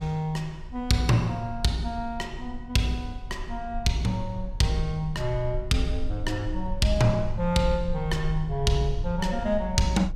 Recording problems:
rumble; below 54 Hz, SNR 10 dB

